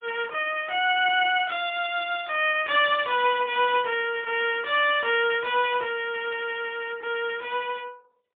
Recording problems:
telephone audio; 240 Hz to 3.5 kHz, AMR-NB, then MP3

